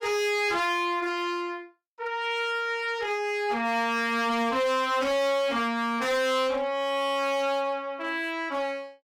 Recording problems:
distorted audio; hard clipping, uneven, signal-to-distortion ratio 10 dB

